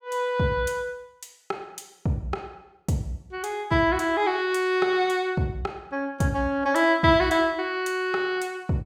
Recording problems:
none

